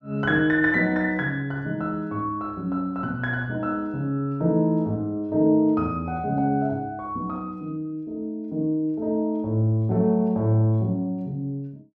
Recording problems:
none

